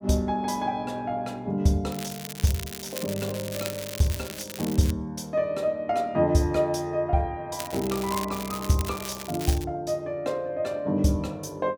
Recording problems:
crackle; from 2 to 5 s and from 7.5 to 9.5 s; loose cable, SNR 9 dB

